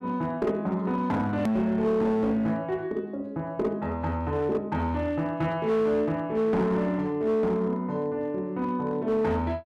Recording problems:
distorted audio; hard clipping, uneven, signal-to-distortion ratio 11 dB
edit click; at 1.5 s

